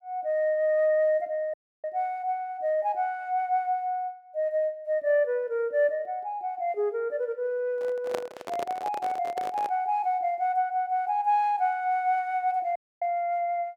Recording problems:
audio cutting out; at 1.5 s and at 13 s
handling noise; from 8 to 10 s; peak -1 dB vs average level

